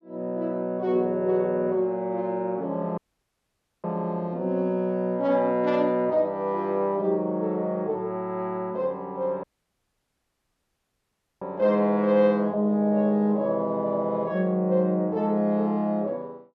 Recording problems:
audio cutting out; at 3 s for 1 s and at 9.5 s for 2 s

